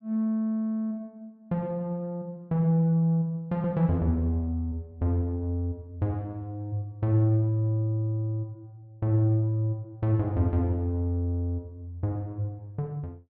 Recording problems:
none

